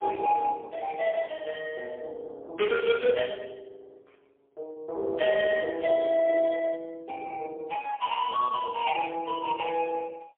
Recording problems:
telephone audio; 340 Hz to 3 kHz, AMR-NB, then MP3

